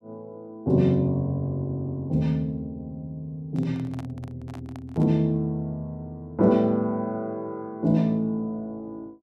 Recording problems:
microphone handling noise; from 3.5 to 5 s; peak -12 dB vs average level

